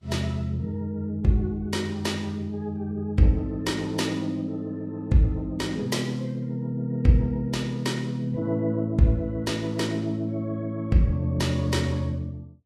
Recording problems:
codec artefacts; Vorbis, log-spectral distance 2 dB, nothing above 13.1 kHz

